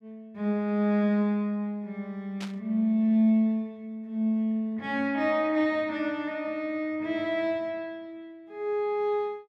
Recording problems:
static burst; at 2.5 s; peak -9 dB vs average level

